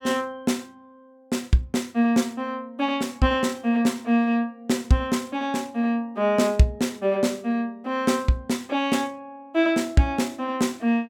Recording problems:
none

